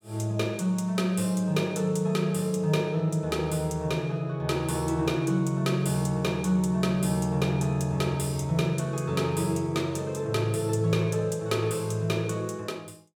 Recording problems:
none

